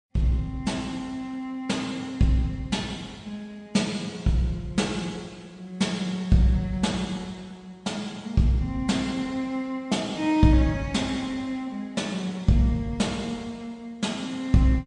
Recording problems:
lossy codec; MP3, log-spectral distance 2 dB, nothing above 9 kHz

